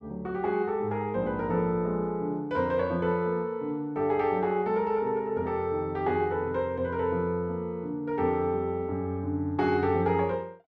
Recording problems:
none

